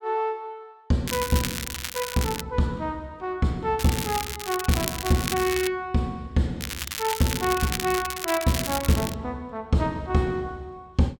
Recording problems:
crackling; from 1 to 2.5 s, from 4 to 5.5 s and from 6.5 to 9 s; loose cable, SNR 5 dB

